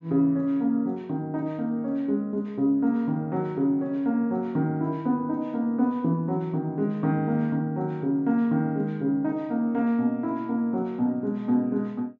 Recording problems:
low-pass filter; nothing above 7.5 kHz

